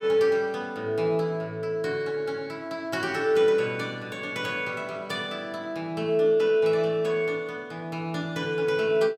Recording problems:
none

